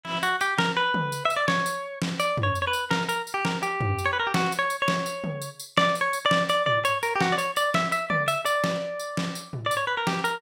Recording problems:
none

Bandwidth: 16.5 kHz